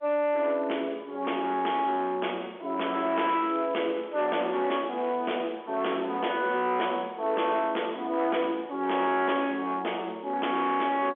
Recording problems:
telephone audio; 280 Hz to 3.4 kHz, G.711
distortion; hard clipping, signal-to-distortion ratio 12 dB
crackling; from 3 to 5.5 s; loose cable, SNR 26 dB

